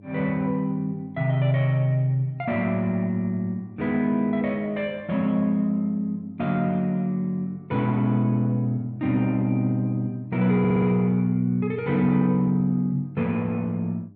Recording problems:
electrical hum; 50 Hz, harmonics up to 700 Hz, SNR 25 dB
stutter; at 11 s

